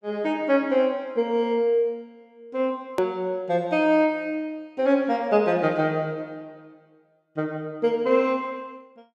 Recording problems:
edit click; at 3 s

